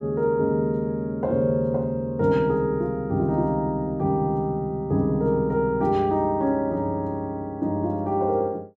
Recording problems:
none

